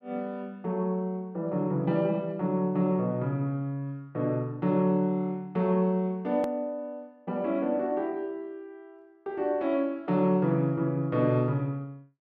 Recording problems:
click at an edit; at 6.5 s

